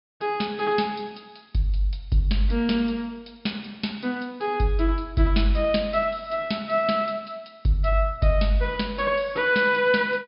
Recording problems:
treble cut off; nothing above 5.5 kHz

